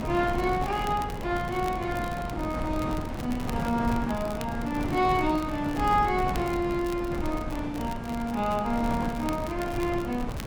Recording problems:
wind on the microphone; below 410 Hz, SNR 6 dB
crackling; vinyl, SNR 18 dB

